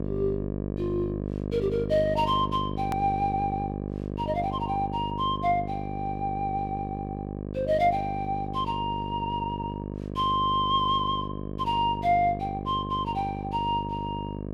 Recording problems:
hum; 50 Hz, harmonics up to 1.1 kHz, SNR 6 dB
edit click; at 3 s

